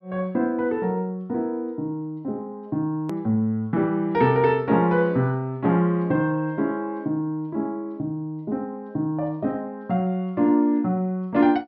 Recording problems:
treble cut off; nothing above 5.7 kHz
hard cut with a click; at 3 s

